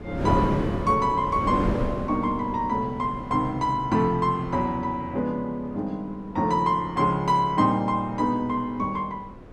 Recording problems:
wind noise; below 450 Hz, SNR 7 dB

